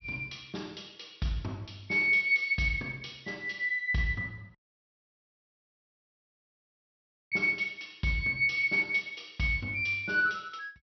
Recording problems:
low-pass filter; nothing above 5.8 kHz
dropout; at 4.5 s for 3 s

